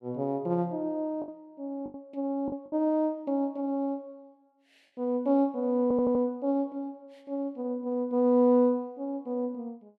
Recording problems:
lost packets; 3% of the sound replaced, filled with the last packet
audio stuttering; at 6 s

